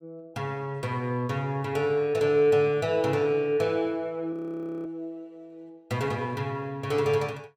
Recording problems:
audio freezing; at 4.5 s for 0.5 s

